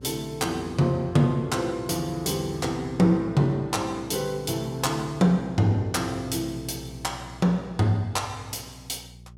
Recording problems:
hum; 60 Hz, harmonics up to 420 Hz, SNR 20 dB

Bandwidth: 16.5 kHz